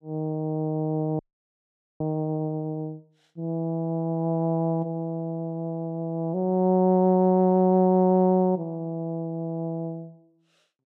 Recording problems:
frozen audio; at 1 s for 1 s

